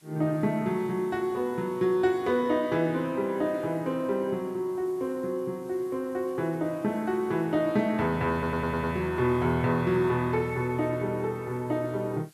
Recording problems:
background hiss; slope 0 dB per octave, SNR 29 dB
stutter; at 8.5 s

